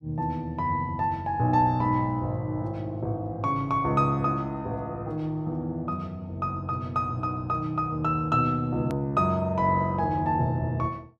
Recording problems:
click at an edit; at 9 s

